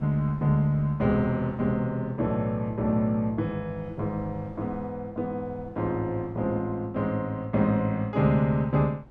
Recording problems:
wind noise; below 270 Hz, SNR 23 dB

